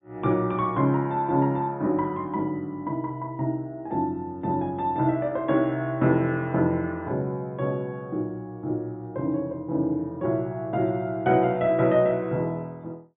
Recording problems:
treble cut off; nothing above 3.7 kHz

